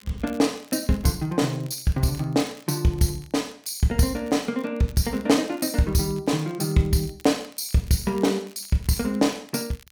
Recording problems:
crackle; vinyl, SNR 26 dB

